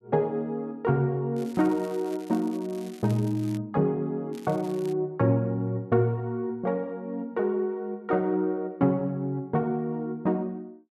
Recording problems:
crackling; from 1.5 to 3.5 s and at 4.5 s; loose cable, SNR 23 dB

